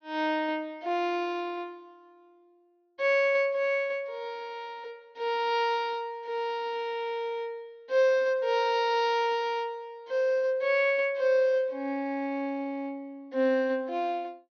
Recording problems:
treble cut off; nothing above 6.4 kHz

